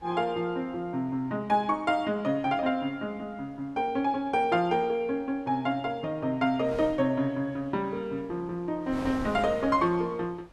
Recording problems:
wind on the microphone; below 910 Hz, SNR 20 dB

